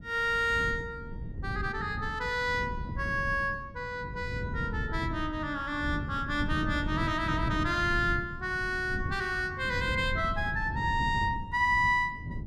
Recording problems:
wind on the microphone; below 170 Hz, SNR 8 dB

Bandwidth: 15 kHz